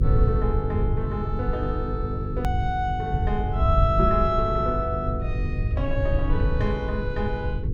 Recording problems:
hum; 50 Hz, harmonics up to 500 Hz, SNR 6 dB
rumble; below 100 Hz, SNR 0 dB
hard cut with a click; at 2.5 s

